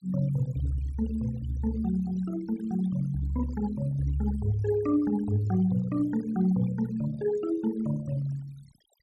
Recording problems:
denoising artefacts; signal-to-artefact ratio 20 dB

